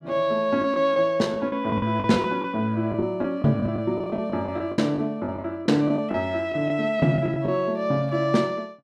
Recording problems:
lost packets; 11% of the sound replaced, filled with the last packet

